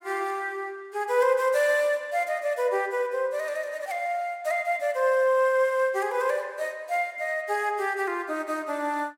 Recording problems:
none

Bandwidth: 16.5 kHz